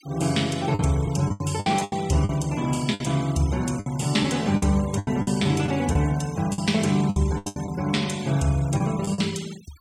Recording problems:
noise reduction artefacts; signal-to-artefact ratio 19 dB
lost packets; 11% of the sound replaced, filled with the last packet

